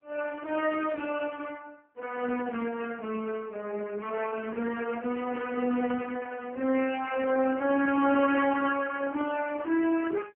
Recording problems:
phone line; 240 Hz to 3 kHz, AMR-NB

